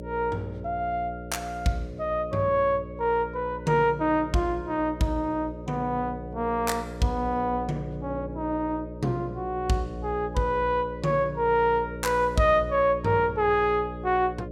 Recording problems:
hum; 60 Hz, harmonics up to 600 Hz, SNR 11 dB

